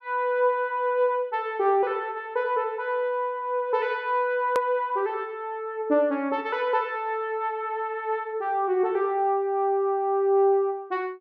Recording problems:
edit click; at 4.5 s

